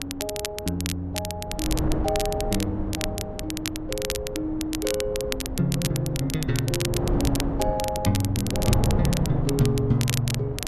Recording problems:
wind noise; below 330 Hz, SNR 4 dB
crackle; vinyl, SNR 6 dB

